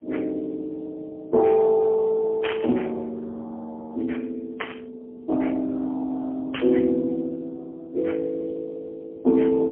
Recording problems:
telephone audio; 190 Hz to 2.3 kHz, AMR-NB, then MP3
static burst; at 2.5 s, at 4.5 s and at 6.5 s; peak -1 dB vs average level

